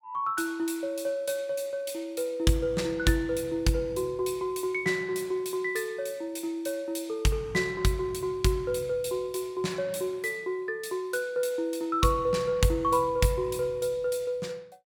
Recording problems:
none

